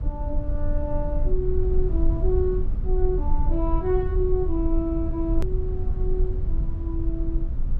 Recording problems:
low-frequency rumble; below 56 Hz, strongest tone 22 Hz, SNR -2 dB
click at an edit; at 5.5 s

